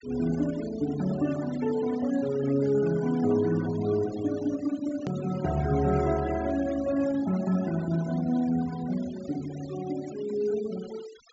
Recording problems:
treble missing; nothing above 8 kHz
noise reduction artefacts; signal-to-artefact ratio 17 dB
click at an edit; at 5 s

